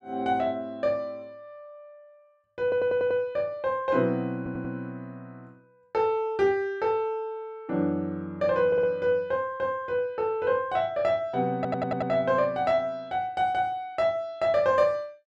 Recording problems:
stutter; 4 times, first at 2.5 s

